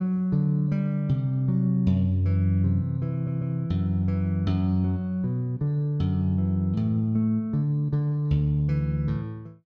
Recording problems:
stutter; at 3 s

